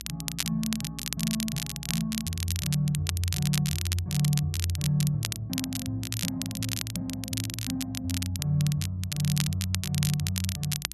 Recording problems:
electrical hum; 60 Hz, harmonics up to 360 Hz, SNR 20 dB
crackle; vinyl, SNR 4 dB

